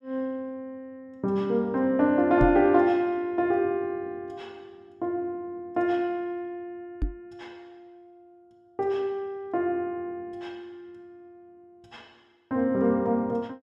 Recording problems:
microphone bump; at 2.5 s and at 7 s; peak +2 dB vs average level

